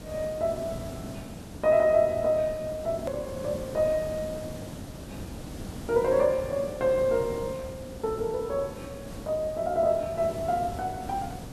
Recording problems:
background hiss; SNR 12 dB
click at an edit; at 3 s

